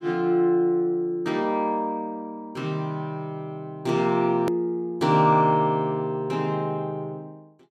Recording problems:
hard cut with a click; at 4.5 s

